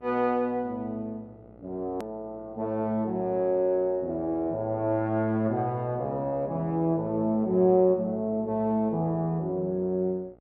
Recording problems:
hum; 60 Hz, harmonics up to 1.4 kHz, SNR 26 dB
hard cut with a click; at 2 s

